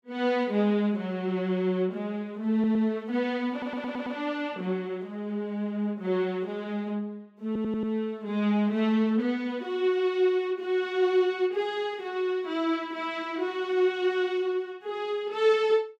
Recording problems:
stutter; at 2.5 s, at 3.5 s and at 7.5 s

